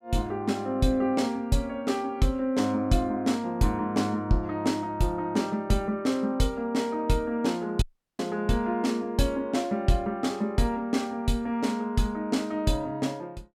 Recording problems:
dropout; at 8 s

